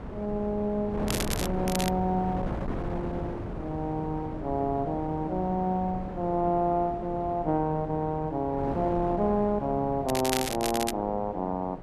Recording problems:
wind on the microphone; below 530 Hz, SNR 8 dB
crackle; at 1 s, at 1.5 s and at 10 s; loose cable, SNR 5 dB

